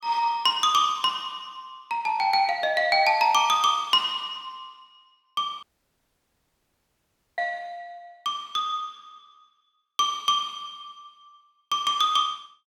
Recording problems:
audio cutting out; at 5.5 s for 2 s

